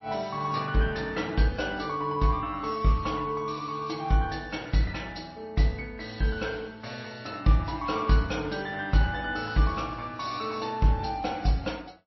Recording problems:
lossy compression; MP3, log-spectral distance 4 dB, nothing above 5.7 kHz

